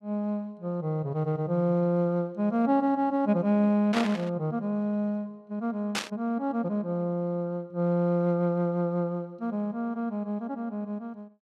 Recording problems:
static burst; at 4 s and at 6 s; peak +2 dB vs average level

